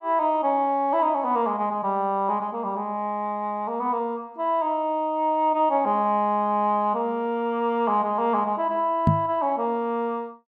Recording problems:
microphone thump; at 9 s; peak +8 dB vs average level

